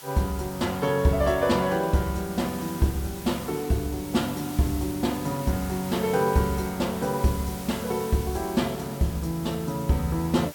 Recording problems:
hiss; SNR 14 dB

